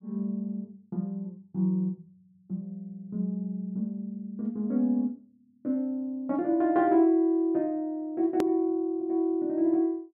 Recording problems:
hard cut with a click; at 8.5 s

